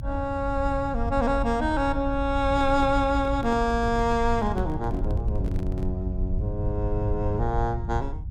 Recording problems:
low-frequency rumble; below 86 Hz, SNR 5 dB
handling noise; from 2.5 to 6 s; peak -7 dB vs average level

